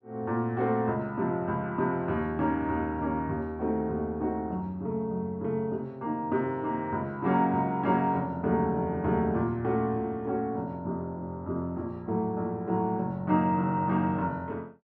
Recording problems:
none

